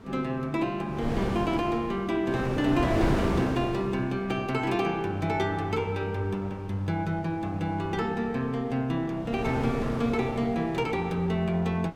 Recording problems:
wind on the microphone; below 610 Hz, SNR 5 dB

